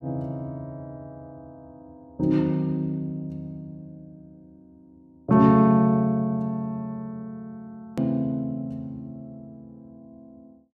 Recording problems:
hard cut with a click; at 8 s

